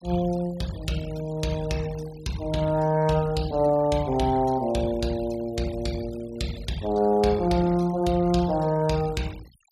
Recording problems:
noise reduction artefacts; signal-to-artefact ratio 21 dB

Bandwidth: 14.5 kHz